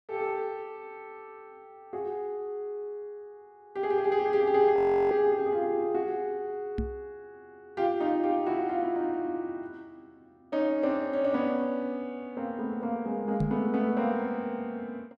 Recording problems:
frozen audio; at 5 s
knock on the microphone; at 7 s and at 13 s; peak +2 dB vs average level

